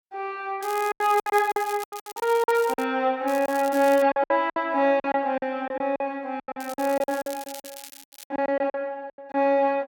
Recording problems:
lost packets; 15% of the sound replaced, filled with silence
crackling; from 0.5 to 3 s, at 3.5 s and from 6.5 to 8.5 s; loose cable, SNR 17 dB

